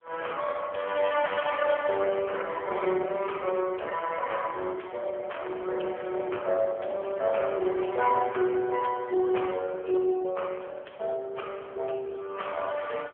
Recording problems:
phone line; 320 Hz to 3.2 kHz, AMR-NB

